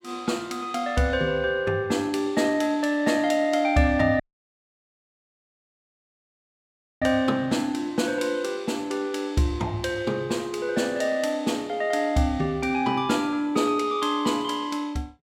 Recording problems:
audio cutting out; at 4 s for 3 s

